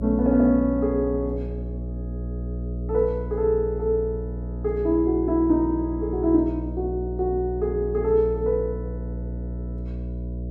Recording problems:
hum; 60 Hz, harmonics up to 660 Hz, SNR 8 dB

